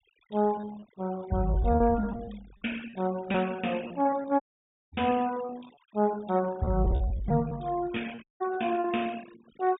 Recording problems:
treble missing; nothing above 4 kHz
noise reduction artefacts; signal-to-artefact ratio 20 dB
packet loss; 11% of the sound replaced, filled with repeated pitch periods
dropout; at 4.5 s for 0.5 s and at 8 s

